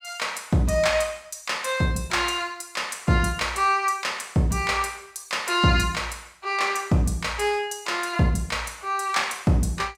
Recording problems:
none

